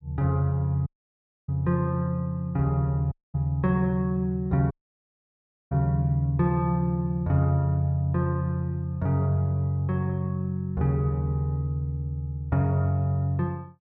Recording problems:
dropout; at 1 s for 0.5 s, at 3 s and at 4.5 s for 1 s

